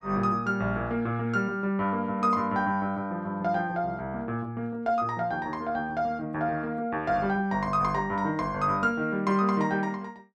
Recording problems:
none

